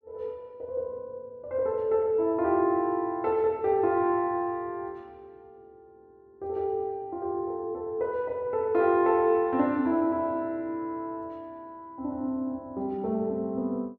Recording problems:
none

